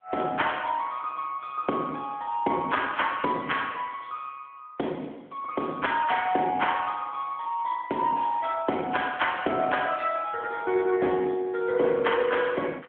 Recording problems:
telephone audio; 220 Hz to 3.4 kHz, AMR-NB

